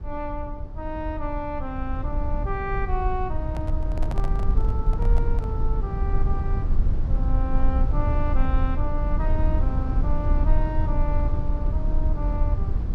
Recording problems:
rumble; below 64 Hz, SNR -7 dB
handling noise; from 3.5 to 5.5 s; peak 0 dB vs average level

